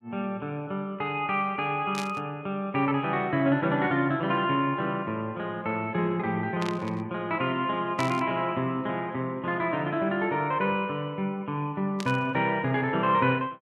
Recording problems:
static burst; 4 times, first at 2 s; peak -4 dB vs average level

